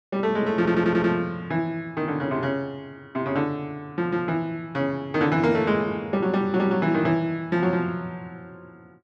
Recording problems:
audio stuttering; at 0.5 s

